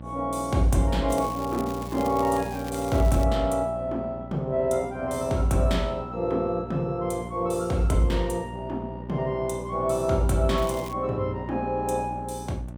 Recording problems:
electrical hum; 60 Hz, harmonics up to 900 Hz, SNR 12 dB
crackle; from 1 to 3 s and at 11 s; loose cable, SNR 18 dB

